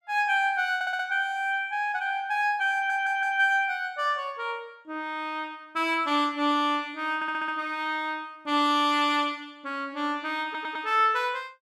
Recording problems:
stutter; 4 times, first at 1 s

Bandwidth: 14.5 kHz